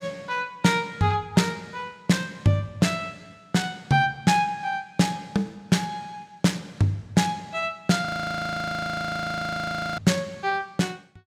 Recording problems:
frozen audio; at 8 s for 2 s

